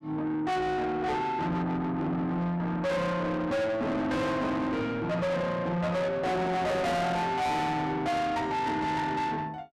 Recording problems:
distortion; soft clipping, signal-to-distortion ratio 6 dB

